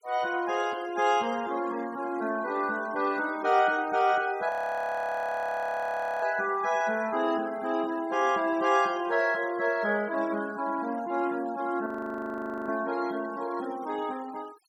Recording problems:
denoising artefacts; signal-to-artefact ratio 19 dB
frozen audio; at 4.5 s for 1.5 s and at 12 s for 1 s

